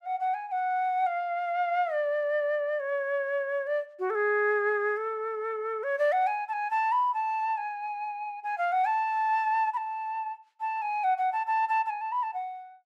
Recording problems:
none

